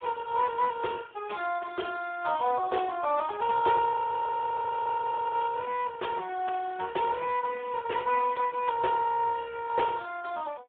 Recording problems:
telephone audio; 300 Hz to 3.4 kHz, Speex
audio freezing; at 4 s for 1.5 s

